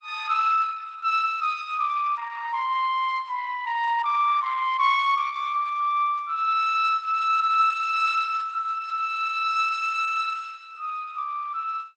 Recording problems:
lossy compression; Opus, log-spectral distance 3 dB

